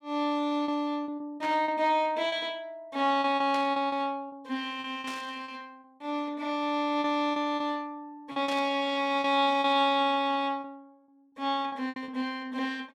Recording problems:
lost packets; 9% of the sound replaced, filled with repeated pitch periods
burst of static; 4 times, first at 1.5 s; peak -7 dB vs average level

